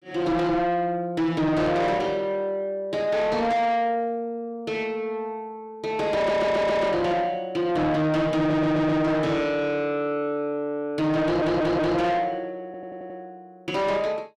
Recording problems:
distorted audio; soft clipping, signal-to-distortion ratio 8 dB
stutter; 4 times, first at 6 s

